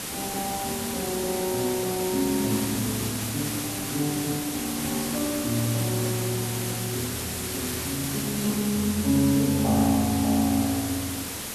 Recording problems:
hiss; slope -2 dB per octave, SNR 3 dB

